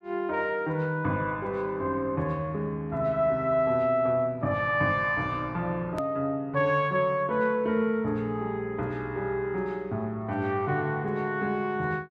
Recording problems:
edit click; at 6 s

